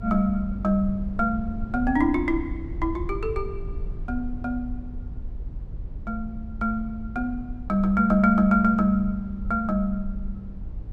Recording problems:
rumble; below 76 Hz, SNR 11 dB

